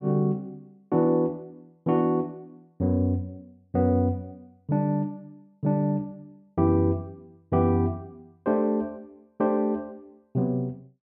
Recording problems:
none

